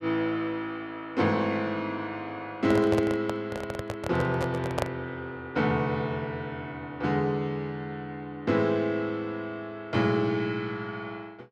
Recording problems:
handling noise; from 2.5 to 5 s; peak +4 dB vs average level

